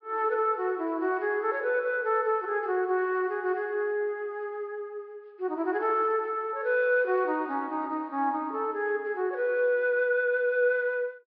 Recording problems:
treble cut off; nothing above 5.5 kHz

